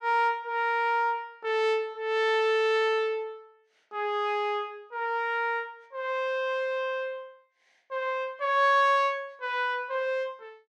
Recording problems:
none

